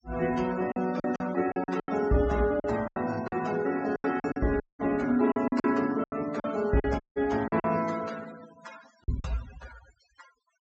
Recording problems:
treble missing; nothing above 8 kHz
noise reduction artefacts; signal-to-artefact ratio 17 dB
lost packets; 11% of the sound replaced, filled with silence
audio cutting out; at 4.5 s and at 7 s

